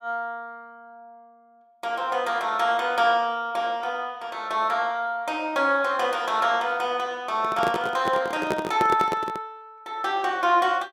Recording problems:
microphone handling noise; from 7.5 to 9.5 s; peak +2 dB vs average level

